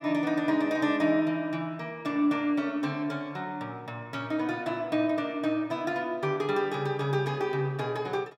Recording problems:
none

